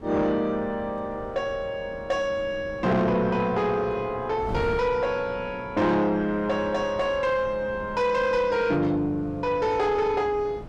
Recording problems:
distortion; soft clipping, signal-to-distortion ratio 11 dB
wind noise; below 420 Hz, SNR 16 dB

